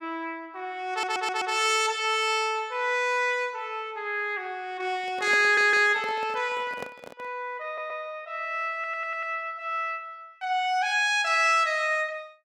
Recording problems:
stutter; 4 times, first at 1 s
handling noise; from 5 to 7.5 s; peak -6 dB vs average level

